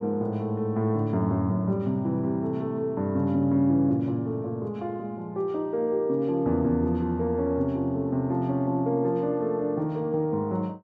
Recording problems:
none

